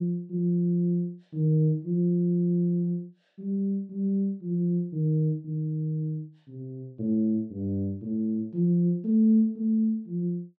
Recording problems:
none

